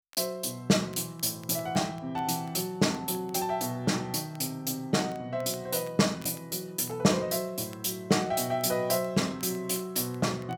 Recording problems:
crackling; vinyl, SNR 28 dB

